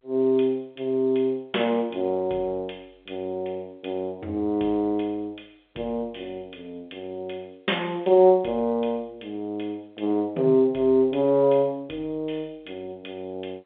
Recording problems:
phone line; 280 Hz to 3.4 kHz, G.711

